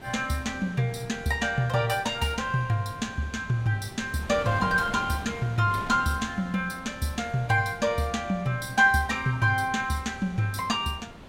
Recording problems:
wind on the microphone; below 1 kHz, SNR 16 dB

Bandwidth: 16 kHz